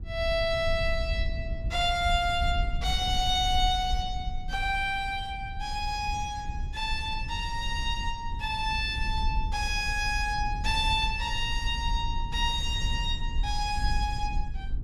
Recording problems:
low-frequency rumble; below 68 Hz, SNR 6 dB

